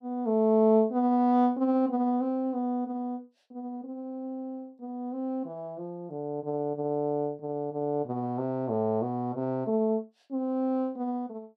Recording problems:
none

